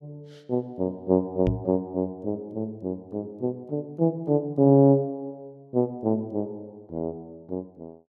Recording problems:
microphone bump; at 1.5 s; peak +2 dB vs average level

